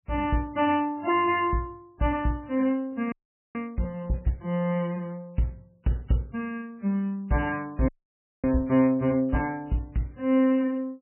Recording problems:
lossy compression; MP3, log-spectral distance 2 dB, nothing above 2.9 kHz
frozen audio; at 3 s and at 8 s for 0.5 s

